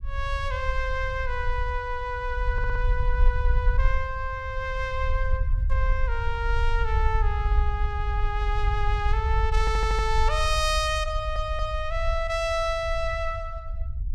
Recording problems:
low-frequency rumble; below 60 Hz, SNR 0 dB
stutter; at 2.5 s, at 9.5 s and at 11 s

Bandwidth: 15.5 kHz